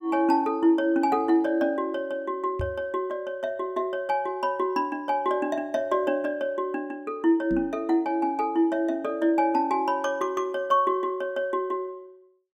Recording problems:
microphone thump; at 2.5 s and at 7.5 s; peak -3 dB vs average level

